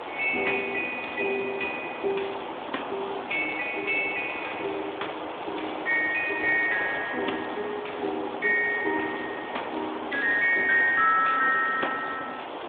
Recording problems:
telephone audio; 260 Hz to 3.5 kHz, Speex
background hiss; SNR 8 dB

